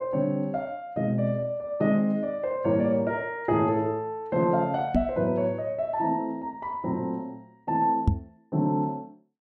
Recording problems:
microphone thump; at 5 s and at 8 s; peak +8 dB vs average level

